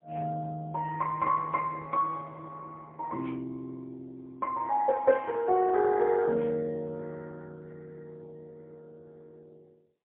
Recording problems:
phone line; 190 Hz to 2.6 kHz, AMR-NB, then MP3

